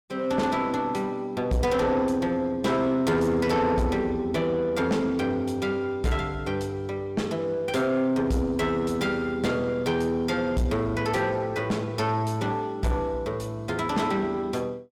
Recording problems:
distorted audio; soft clipping, signal-to-distortion ratio 10 dB

